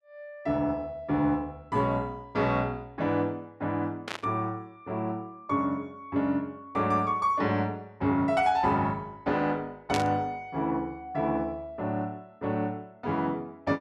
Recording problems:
static burst; at 4 s and at 10 s; peak +1 dB vs average level

